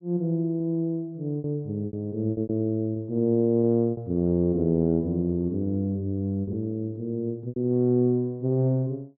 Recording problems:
packet loss; 6% of the sound replaced, filled with repeated pitch periods

